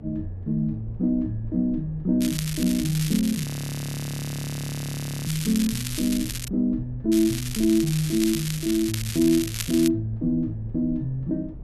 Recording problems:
rumble; below 120 Hz, SNR 17 dB
crackling; from 2 to 6.5 s and from 7 to 10 s; loose cable, SNR 8 dB
frozen audio; at 3.5 s for 2 s

